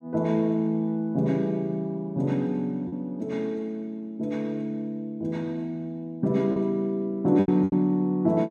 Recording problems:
lost packets; 3% of the sound replaced, filled with repeated pitch periods

